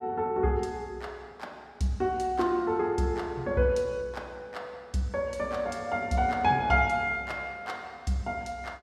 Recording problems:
none

